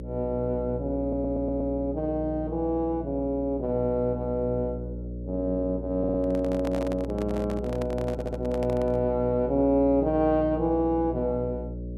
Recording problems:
hum; 60 Hz, harmonics up to 600 Hz, SNR 9 dB
audio stuttering; at 1 s, at 6 s and at 8 s
handling noise; from 6 to 9 s; peak -5 dB vs average level

